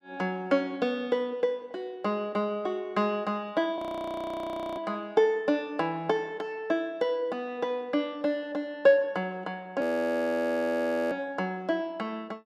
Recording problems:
frozen audio; at 4 s for 1 s and at 10 s for 1.5 s

